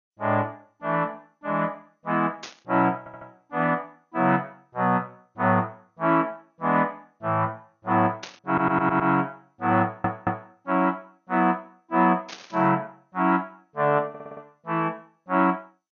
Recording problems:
lossy compression; MP2, log-spectral distance 2 dB
burst of static; at 2.5 s, at 8 s and at 12 s; peak -7 dB vs average level
stutter; 4 times, first at 3 s

